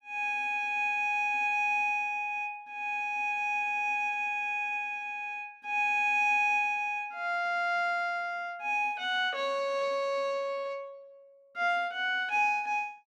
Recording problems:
none

